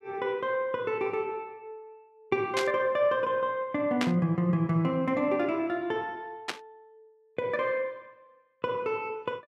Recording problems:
static burst; at 2.5 s, at 4 s and at 6.5 s; peak +2 dB vs average level

